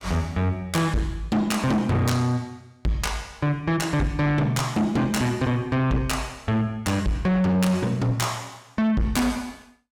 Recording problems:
distorted audio; soft clipping, signal-to-distortion ratio 8 dB

